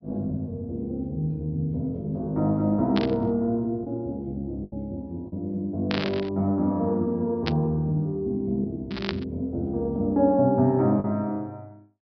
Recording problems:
low-pass filter; nothing above 5.5 kHz
packet loss; 1.7% of the sound replaced, filled with the last packet
static burst; 4 times, first at 3 s; peak +1 dB vs average level

